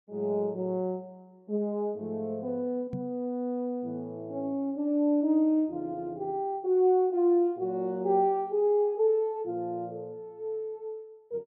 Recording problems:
knock on the microphone; at 3 s; peak -3 dB vs average level

